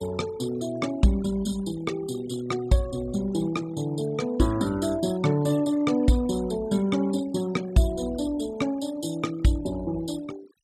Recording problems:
denoising artefacts; signal-to-artefact ratio 19 dB

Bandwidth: 14 kHz